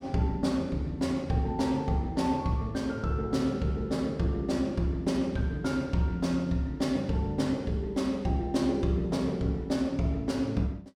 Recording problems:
none

